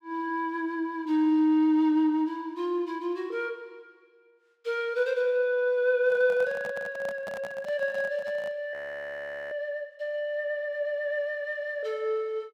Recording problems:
handling noise; from 6 to 8.5 s; peak -8 dB vs average level
audio freezing; at 8.5 s for 1 s

